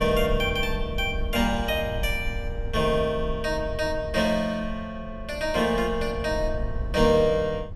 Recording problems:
rumble; below 74 Hz, SNR 9 dB

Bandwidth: 15.5 kHz